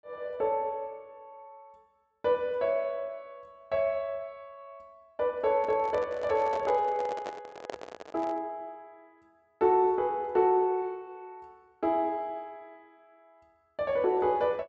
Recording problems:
low-pass filter; nothing above 8 kHz
handling noise; from 5.5 to 8.5 s; peak -4 dB vs average level

